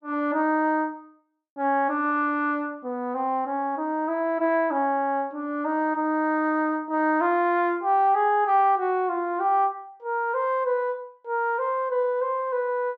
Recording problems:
none

